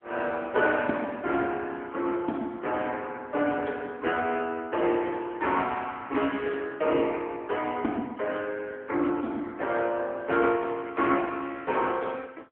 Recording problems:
telephone audio; 260 Hz to 3.6 kHz, AMR-NB

